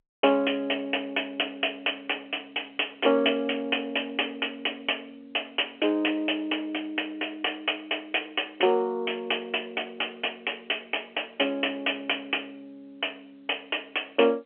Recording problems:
telephone audio; 320 Hz to 3.1 kHz, G.711

